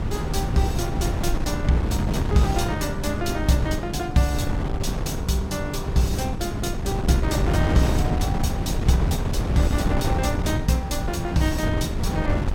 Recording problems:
wind on the microphone; below 210 Hz, SNR 0 dB

